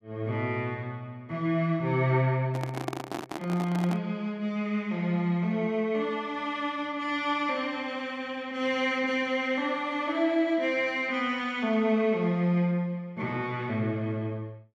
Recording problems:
handling noise; from 2.5 to 4 s; peak 0 dB vs average level

